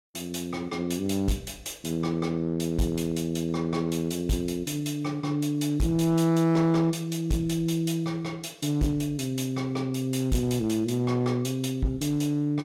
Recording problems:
distorted audio; hard clipping, uneven, signal-to-distortion ratio 11 dB

